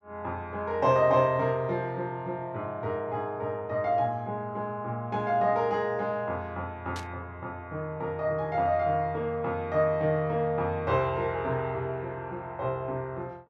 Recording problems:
burst of static; at 7 s; peak -8 dB vs average level

